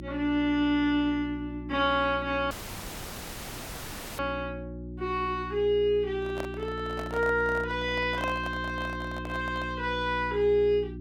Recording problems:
hum; 60 Hz, harmonics up to 360 Hz, SNR 11 dB
dropout; at 2.5 s for 1.5 s
handling noise; from 6 to 10 s; peak -4 dB vs average level

